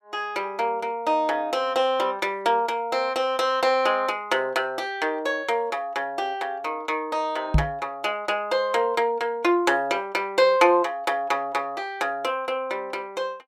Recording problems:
microphone bump; at 7.5 s; peak +7 dB vs average level

